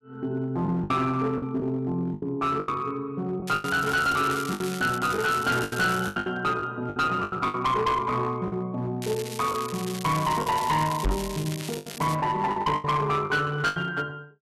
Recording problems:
distorted audio; hard clipping, uneven, signal-to-distortion ratio 10 dB
packet loss; 10% of the sound replaced, filled with the last packet
crackle; from 3.5 to 5 s, from 5 to 6 s and from 9 to 12 s; loose cable, SNR 11 dB
knock on the microphone; at 11 s; peak +2 dB vs average level

